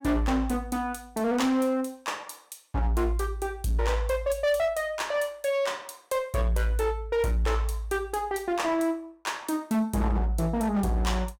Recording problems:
distortion; hard clipping, signal-to-distortion ratio 10 dB

